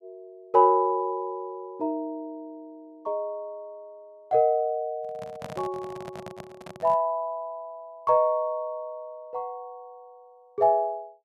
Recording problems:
handling noise; from 5 to 7 s; peak -7 dB vs average level

